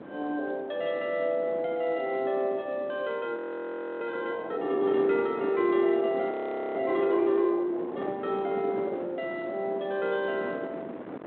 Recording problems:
phone line; 240 Hz to 3.8 kHz, G.726
wind noise; below 620 Hz, SNR 12 dB
frozen audio; at 3.5 s for 0.5 s and at 6.5 s

